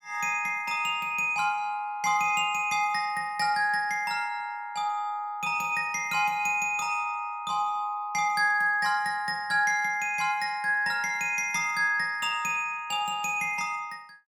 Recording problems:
none

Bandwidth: 18 kHz